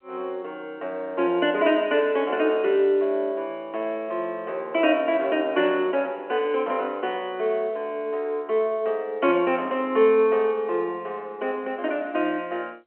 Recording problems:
phone line; 280 Hz to 3.3 kHz, G.711

